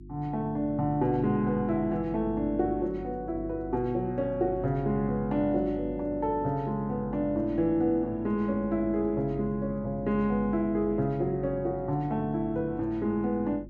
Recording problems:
electrical hum; 50 Hz, harmonics up to 350 Hz, SNR 14 dB

